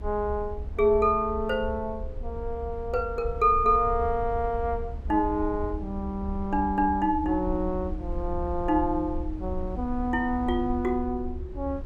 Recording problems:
rumble; below 70 Hz, SNR 10 dB

